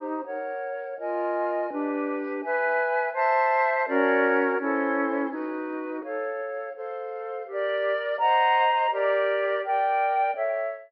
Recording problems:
treble cut off; nothing above 5.3 kHz

